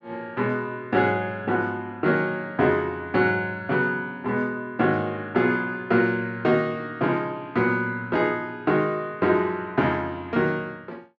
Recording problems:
none

